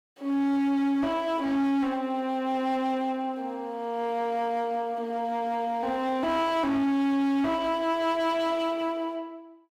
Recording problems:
distorted audio; hard clipping, signal-to-distortion ratio 10 dB

